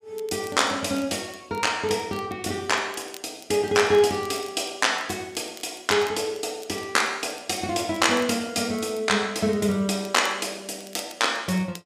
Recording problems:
crackle; vinyl, SNR 22 dB

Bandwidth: 15 kHz